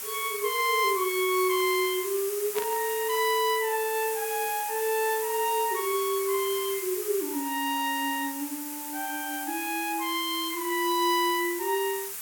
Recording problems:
background hiss; slope +1 dB per octave, SNR 6 dB
static burst; at 2.5 s; peak -4 dB vs average level

